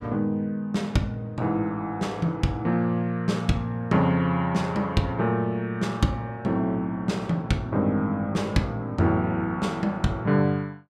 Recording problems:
none

